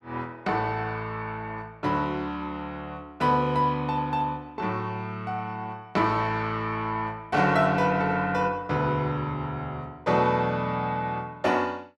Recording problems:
none

